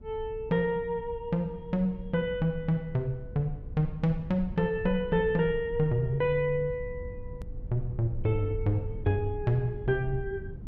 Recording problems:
low-frequency rumble; below 88 Hz, SNR 13 dB
hard cut with a click; at 7.5 s

